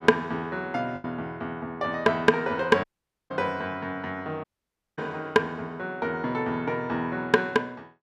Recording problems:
lost packets; 1.3% of the sound replaced, filled with the last packet
dropout; at 3 s and at 4.5 s for 0.5 s

